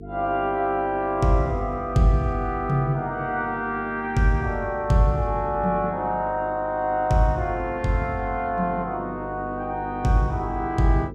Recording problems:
hum; 50 Hz, harmonics up to 450 Hz, SNR 15 dB

